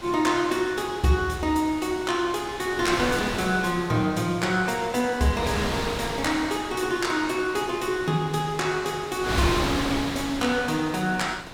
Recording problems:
wind noise; below 3.2 kHz, SNR 8 dB

